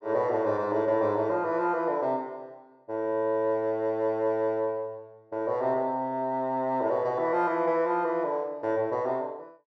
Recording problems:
none

